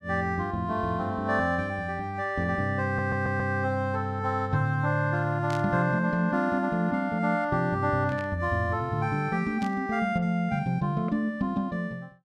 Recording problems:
stutter; at 3 s
burst of static; at 5.5 s, at 8 s and at 9.5 s; peak -11 dB vs average level

